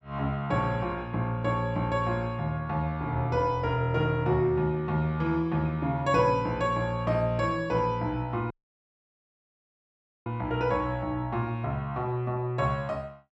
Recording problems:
dropout; at 8.5 s for 2 s

